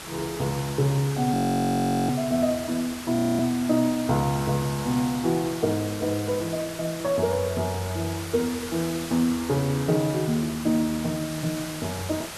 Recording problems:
hiss; slope -1 dB per octave, SNR 10 dB
audio freezing; at 1.5 s for 0.5 s and at 3 s

